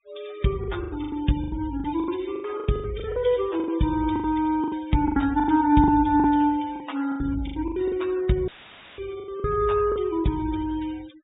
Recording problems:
treble cut off; nothing above 4 kHz
noise reduction artefacts; signal-to-artefact ratio 20 dB
lost packets; 16% of the sound replaced, filled with the last packet
audio cutting out; at 8.5 s for 0.5 s; filled with static

